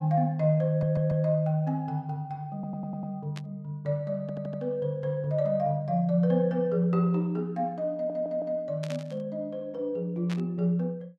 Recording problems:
stutter; 4 times, first at 0.5 s
static burst; at 3.5 s, at 9 s and at 10 s; peak -7 dB vs average level

